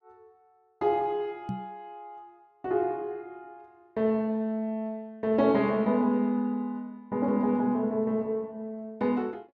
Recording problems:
microphone thump; at 1.5 s; peak -2 dB vs average level

